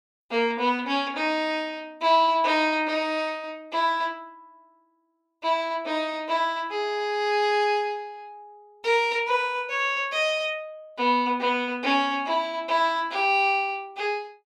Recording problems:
none

